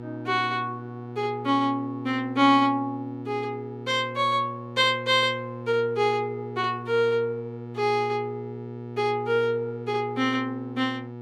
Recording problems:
hum; 60 Hz, harmonics up to 960 Hz, SNR 12 dB

